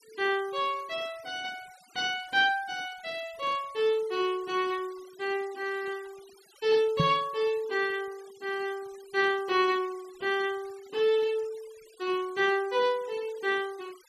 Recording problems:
noise reduction artefacts; signal-to-artefact ratio 23 dB
microphone bump; at 7 s; peak +6 dB vs average level

